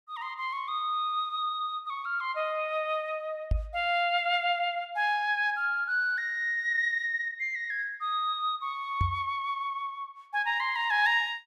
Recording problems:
microphone thump; at 3.5 s and at 9 s; peak +4 dB vs average level

